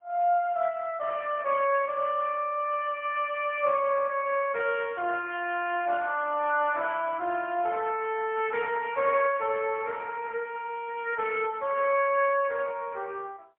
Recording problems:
phone line; 370 Hz to 3.3 kHz, AMR-NB, then MP3

